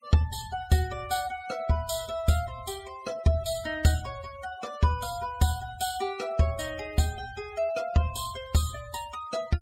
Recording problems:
denoising artefacts; signal-to-artefact ratio 17 dB

